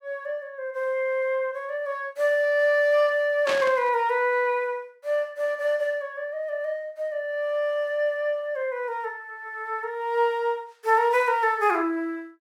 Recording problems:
static burst; at 3.5 s; peak 0 dB vs average level

